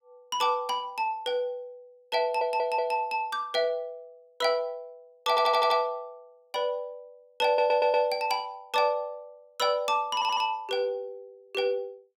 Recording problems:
stutter; 4 times, first at 2 s

